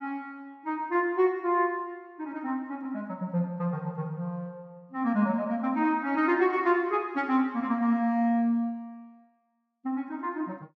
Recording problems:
none

